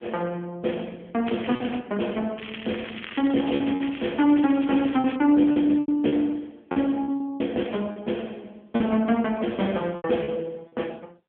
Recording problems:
phone line; 220 Hz to 3.4 kHz, AMR-NB
lost packets; 7% of the sound replaced, filled with repeated pitch periods
crackling; at 1.5 s and from 2.5 to 5 s; loose cable, SNR 14 dB

